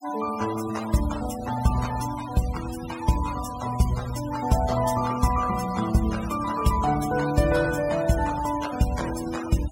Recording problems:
noise reduction artefacts; signal-to-artefact ratio 13 dB

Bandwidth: 16 kHz